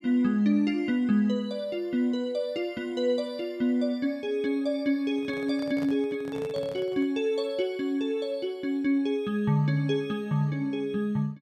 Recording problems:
microphone handling noise; from 5 to 7 s; peak -7 dB vs average level

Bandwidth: 15 kHz